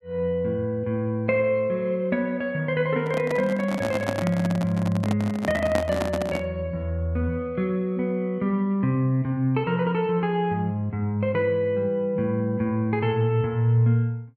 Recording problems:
microphone handling noise; from 3 to 6.5 s; peak +1 dB vs average level

